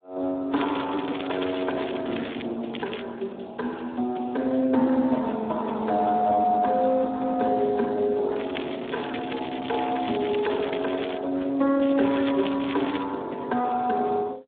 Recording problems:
phone line; 190 Hz to 3.7 kHz, Speex
crackle; 4 times, first at 0.5 s; loose cable, SNR 11 dB

